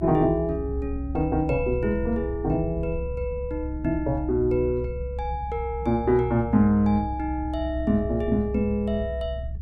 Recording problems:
low-frequency rumble; below 68 Hz, strongest tone 64 Hz, SNR 8 dB

